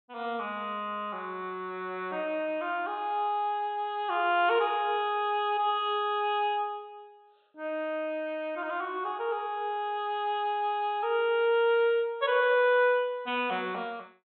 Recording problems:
low-pass filter; nothing above 4.1 kHz

